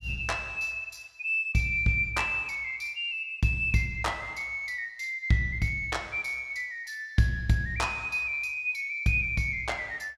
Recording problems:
none

